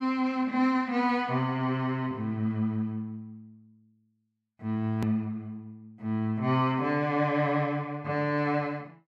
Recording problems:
click at an edit; at 5 s

